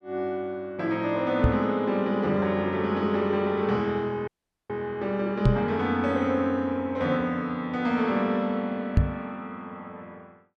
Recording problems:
microphone thump; at 1.5 s, at 5.5 s and at 9 s; peak +9 dB vs average level
audio cutting out; at 4.5 s

